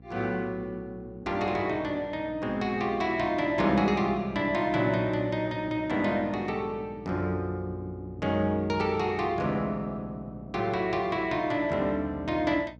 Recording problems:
hum; 60 Hz, harmonics up to 780 Hz, SNR 20 dB

